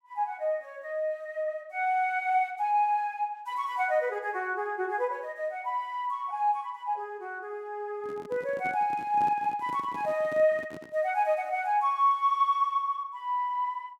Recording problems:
microphone handling noise; from 8 to 11 s; peak -9 dB vs average level

